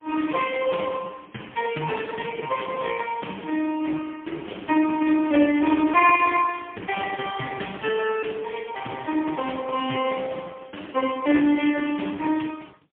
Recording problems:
telephone audio; 220 Hz to 3.2 kHz, AMR-NB, then MP3

